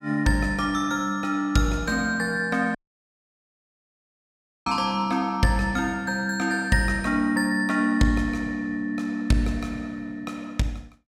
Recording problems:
dropout; at 3 s for 2 s

